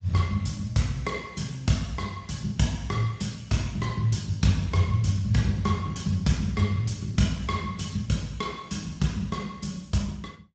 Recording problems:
lossy codec; Speex, log-spectral distance 4 dB, nothing above 7.6 kHz

